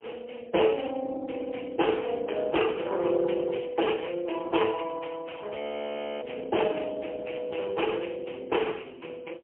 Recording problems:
phone line; 260 Hz to 3.2 kHz, AMR-NB, then MP3
audio freezing; at 5.5 s for 0.5 s

